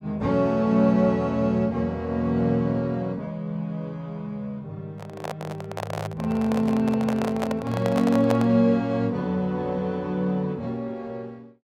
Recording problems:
handling noise; from 5 to 8.5 s; peak 0 dB vs average level

